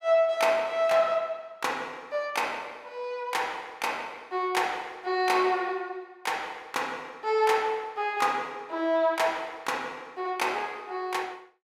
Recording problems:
none

